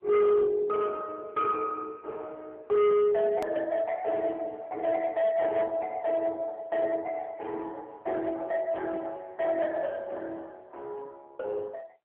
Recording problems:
telephone audio; 300 Hz to 2.4 kHz, AMR-NB
distortion; hard clipping, signal-to-distortion ratio 11 dB
edit click; at 3.5 s

